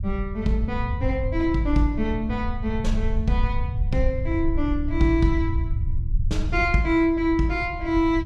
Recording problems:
low-frequency rumble; below 86 Hz, SNR 4 dB

